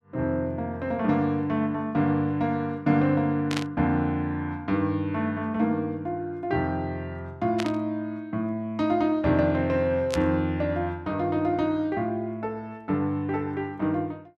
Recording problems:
static burst; at 3.5 s, at 7.5 s and at 10 s; peak 0 dB vs average level

